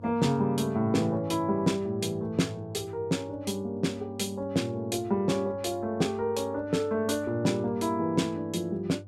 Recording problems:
mains hum; 50 Hz, harmonics up to 500 Hz, SNR 18 dB

